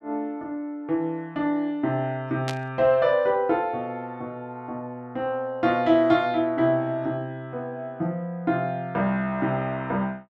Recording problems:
static burst; at 2.5 s; peak -3 dB vs average level

